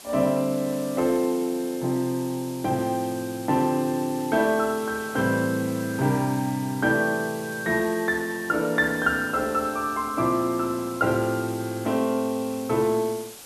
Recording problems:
hiss; SNR 16 dB

